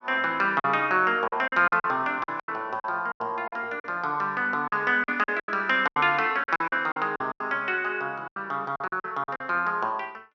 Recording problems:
lost packets; 13% of the sound replaced, filled with silence

